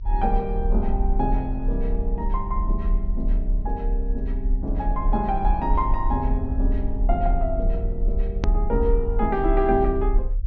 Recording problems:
treble missing; nothing above 6.5 kHz
low-frequency rumble; below 44 Hz, strongest tone 34 Hz, SNR -1 dB
hard cut with a click; at 8.5 s

